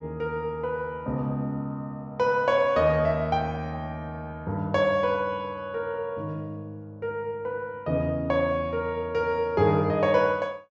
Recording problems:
treble missing; nothing above 8 kHz

